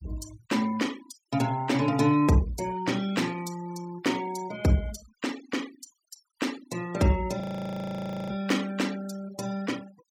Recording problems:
noise reduction artefacts; signal-to-artefact ratio 17 dB
audio freezing; at 7.5 s for 1 s

